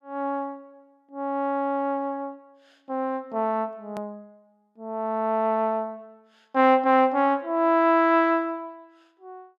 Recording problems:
edit click; at 4 s

